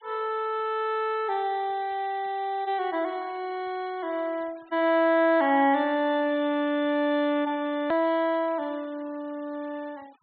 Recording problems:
treble missing; nothing above 4.2 kHz
denoising artefacts; signal-to-artefact ratio 27 dB
hard cut with a click; at 8 s

